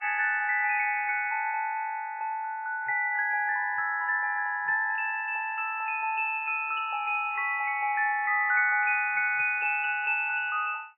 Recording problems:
lossy codec; MP3, log-spectral distance 2 dB, nothing above 2.5 kHz

